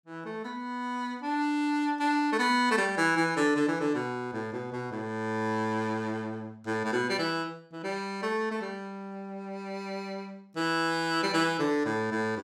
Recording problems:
none

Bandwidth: 17 kHz